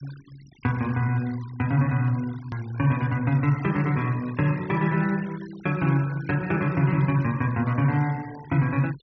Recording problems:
low-pass filter; nothing above 6 kHz
noise reduction artefacts; signal-to-artefact ratio 21 dB
click at an edit; at 2.5 s

